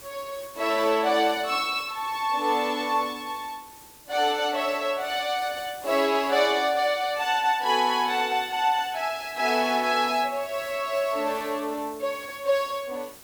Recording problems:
background hiss; SNR 20 dB

